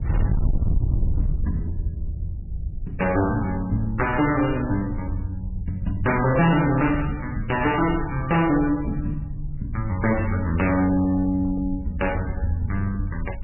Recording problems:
lossy compression; MP3, log-spectral distance 2 dB, nothing above 2.7 kHz
distorted audio; hard clipping, uneven, signal-to-distortion ratio 7 dB
wind on the microphone; below 90 Hz, SNR 8 dB

